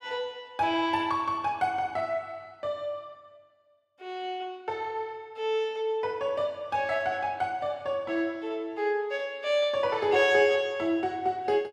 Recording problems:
none

